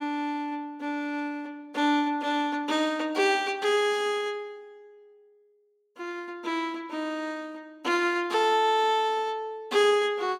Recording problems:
none

